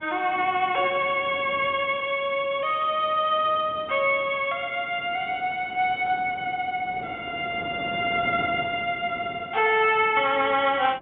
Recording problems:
telephone audio; 300 Hz to 3.6 kHz, G.711
wind noise; below 650 Hz, SNR 18 dB

